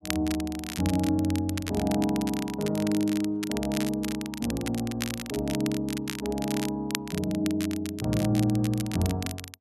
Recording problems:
crackling; vinyl, SNR 9 dB

